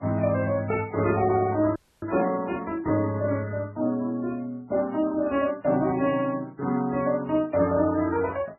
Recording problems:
codec artefacts; MP3, then Vorbis, log-spectral distance 2 dB, nothing above 2.5 kHz
audio freezing; at 2 s

